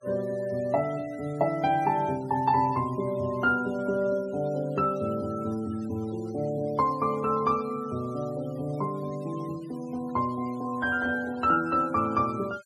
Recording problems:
denoising artefacts; signal-to-artefact ratio 23 dB

